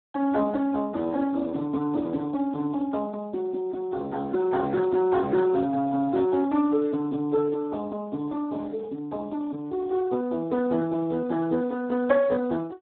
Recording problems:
telephone audio; 220 Hz to 2.2 kHz, Speex

